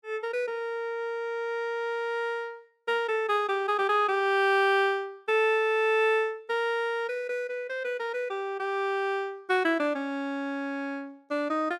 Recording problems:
none

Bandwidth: 14.5 kHz